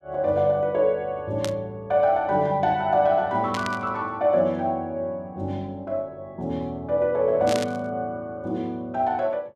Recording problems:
burst of static; at 1.5 s, at 3.5 s and at 7.5 s; peak -3 dB vs average level

